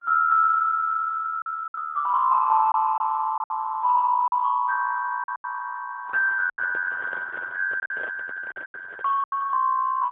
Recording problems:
telephone audio; 470 Hz to 2.5 kHz, AMR-NB, then MP3
packet loss; 7% of the sound replaced, filled with silence
handling noise; from 6 to 9 s; peak -14 dB vs average level

